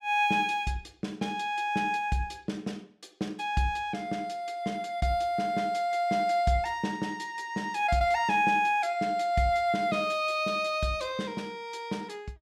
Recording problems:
none

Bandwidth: 17 kHz